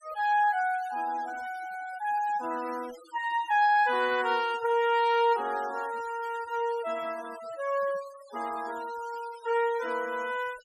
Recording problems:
noise reduction artefacts; signal-to-artefact ratio 20 dB

